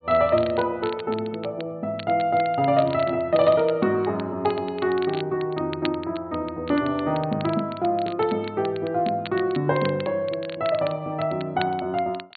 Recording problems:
treble cut off; nothing above 4.4 kHz
crackle; vinyl, SNR 18 dB

